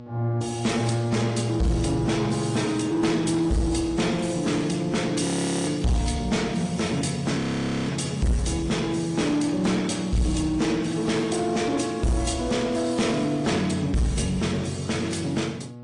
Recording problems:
lossy compression; MP3, then AAC, log-spectral distance 4 dB, nothing above 9.8 kHz
distortion; soft clipping, signal-to-distortion ratio 8 dB
electrical hum; 60 Hz, harmonics up to 1.1 kHz, SNR 17 dB
frozen audio; at 5 s and at 7.5 s

